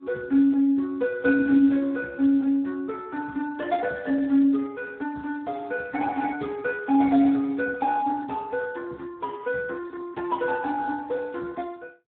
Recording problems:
telephone audio; 130 Hz to 2.5 kHz, Speex

